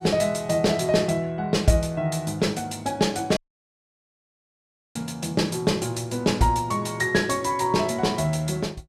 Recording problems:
audio cutting out; at 3.5 s for 1.5 s

